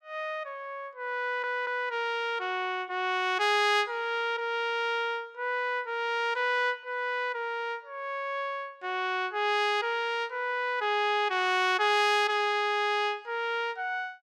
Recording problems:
stutter; at 1 s

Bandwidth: 14.5 kHz